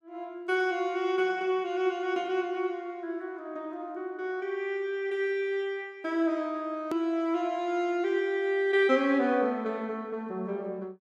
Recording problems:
click at an edit; at 7 s

